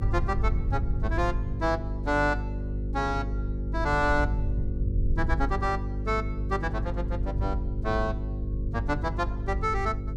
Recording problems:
hum; 50 Hz, harmonics up to 550 Hz, SNR 2 dB
low-frequency rumble; below 90 Hz, SNR 5 dB

